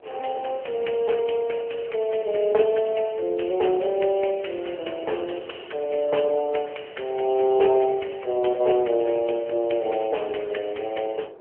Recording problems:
phone line; 300 Hz to 3.2 kHz, AMR-NB
wind noise; below 620 Hz, SNR 22 dB

